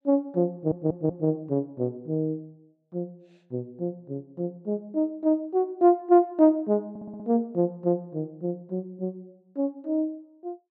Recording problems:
stutter; at 0.5 s and at 7 s

